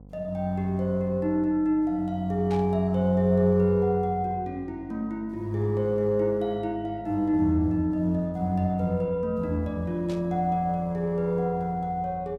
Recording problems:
hum; 50 Hz, harmonics up to 800 Hz, SNR 22 dB
static burst; at 2.5 s and at 10 s; peak -14 dB vs average level

